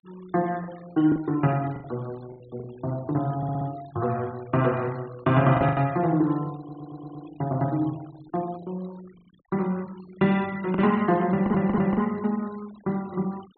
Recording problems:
treble cut off; nothing above 4.3 kHz
denoising artefacts; signal-to-artefact ratio 25 dB
packet loss; 4% of the sound replaced, filled with the last packet
stutter; at 3.5 s, at 6.5 s and at 11 s

